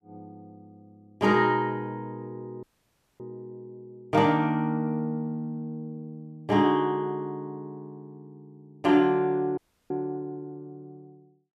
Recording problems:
dropout; at 2.5 s for 0.5 s and at 9.5 s

